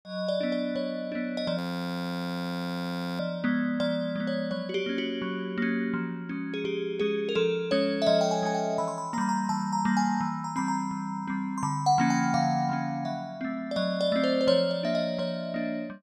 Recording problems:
frozen audio; at 1.5 s for 1.5 s

